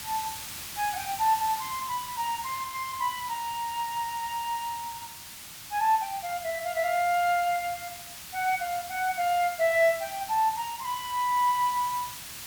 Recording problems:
background hiss; slope +2 dB per octave, SNR 10 dB

